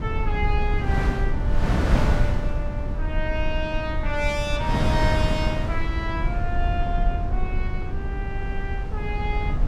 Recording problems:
electrical hum; 60 Hz, harmonics up to 720 Hz, SNR 19 dB
low-frequency rumble; below 74 Hz, SNR -2 dB
wind noise; below 300 Hz, SNR -1 dB

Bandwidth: 16 kHz